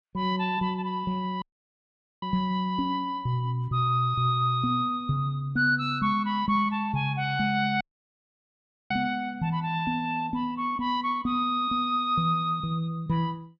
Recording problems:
audio cutting out; at 1.5 s for 1 s and at 8 s for 1 s

